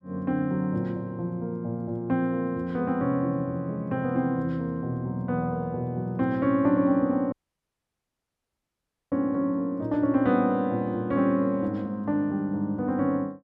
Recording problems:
audio cutting out; at 7.5 s for 2 s

